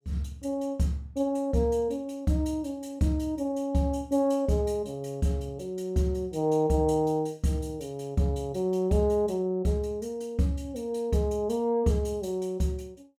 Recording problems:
none

